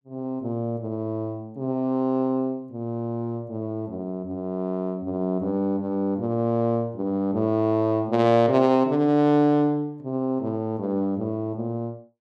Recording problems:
none

